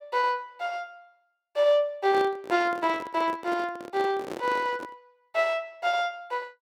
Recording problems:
handling noise; from 2 to 5 s; peak -5 dB vs average level

